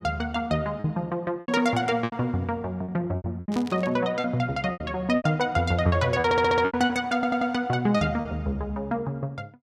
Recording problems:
packet loss; 10% of the sound replaced, filled with repeated pitch periods
static burst; at 3.5 s; peak -10 dB vs average level
audio stuttering; at 6.5 s and at 7 s

